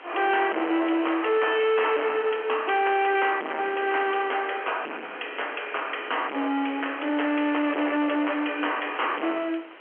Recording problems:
phone line; 240 Hz to 3.2 kHz, G.711
distorted audio; hard clipping, signal-to-distortion ratio 6 dB
background hiss; SNR 20 dB

